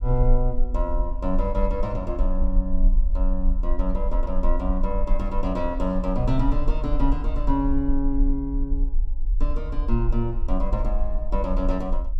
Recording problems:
low-frequency rumble; below 40 Hz, strongest tone 24 Hz, SNR -1 dB

